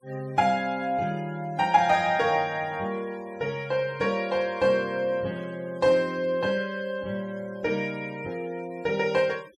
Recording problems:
noise reduction artefacts; signal-to-artefact ratio 25 dB

